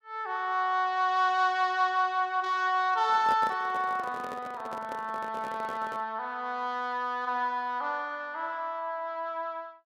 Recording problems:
microphone handling noise; from 3 to 6 s; peak -5 dB vs average level

